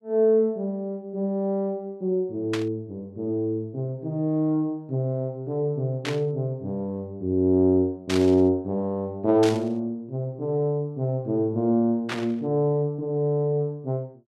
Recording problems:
static burst; 5 times, first at 2.5 s; peak -1 dB vs average level

